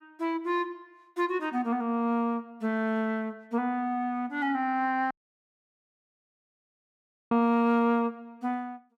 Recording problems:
dropout; at 5 s for 2 s

